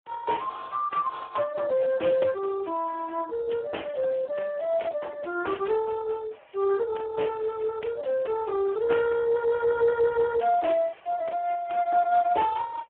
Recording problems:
phone line; 260 Hz to 2.9 kHz, Speex

